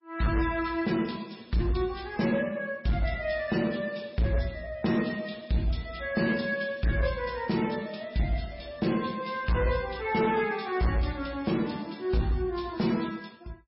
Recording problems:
lossy codec; MP3, log-spectral distance 4 dB, nothing above 5.3 kHz
distorted audio; hard clipping, signal-to-distortion ratio 12 dB

